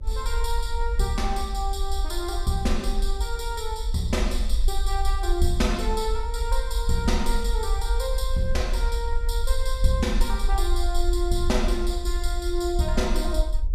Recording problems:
hum; 50 Hz, harmonics up to 600 Hz, SNR 24 dB
low-frequency rumble; below 50 Hz, SNR 0 dB

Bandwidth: 14.5 kHz